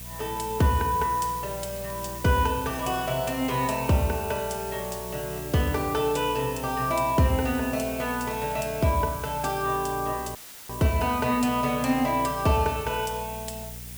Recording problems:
electrical hum; 60 Hz, harmonics up to 480 Hz, SNR 16 dB
background hiss; slope 0 dB per octave, SNR 12 dB
crackling; from 0.5 to 3 s, from 4.5 to 6.5 s and from 7 to 10 s; loose cable, SNR 29 dB
audio cutting out; at 10 s; filled with static

